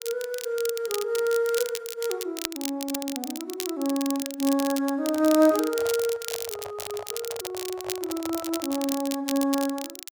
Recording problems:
crackling; vinyl, SNR 8 dB
handling noise; from 5 to 9 s; peak -7 dB vs average level

